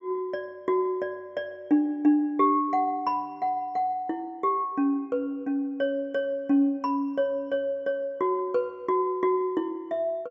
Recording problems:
treble cut off; nothing above 8 kHz

